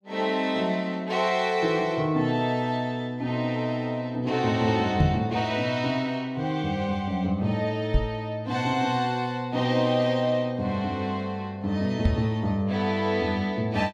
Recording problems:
microphone bump; at 5 s, at 8 s and at 12 s; peak +8 dB vs average level

